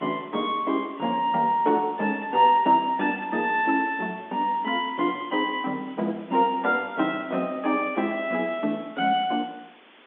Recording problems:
phone line; 190 Hz to 3.7 kHz, G.711
hiss; SNR 27 dB

